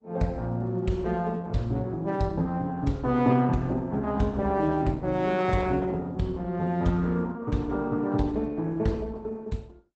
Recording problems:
lossy compression; Opus, log-spectral distance 2 dB, nothing above 8 kHz

